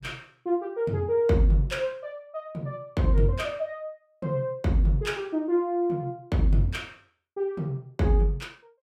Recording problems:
none

